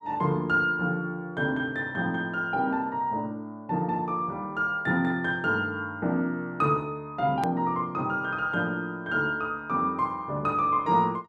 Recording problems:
click at an edit; at 7.5 s

